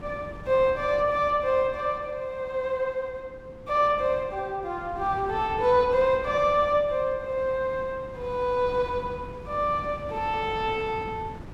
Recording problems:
wind noise; below 350 Hz, SNR 17 dB

